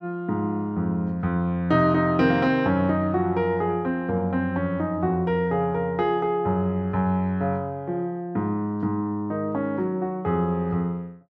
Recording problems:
none

